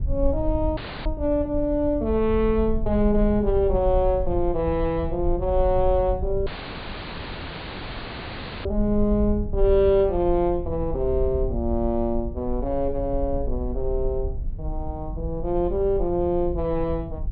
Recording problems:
treble cut off; nothing above 4.6 kHz
low-frequency rumble; below 60 Hz, SNR 8 dB
audio cutting out; at 1 s and at 6.5 s for 2 s

